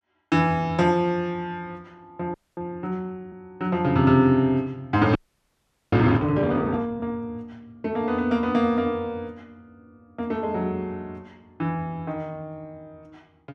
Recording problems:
audio freezing; at 2.5 s and at 5 s for 1 s

